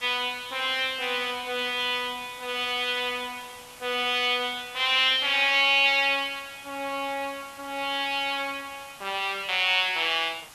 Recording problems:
hiss; SNR 21 dB

